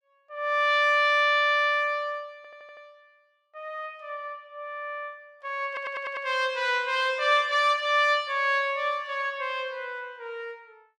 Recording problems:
audio stuttering; at 2.5 s and at 5.5 s

